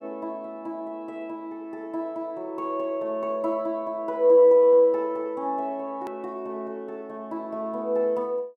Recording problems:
edit click; at 6 s

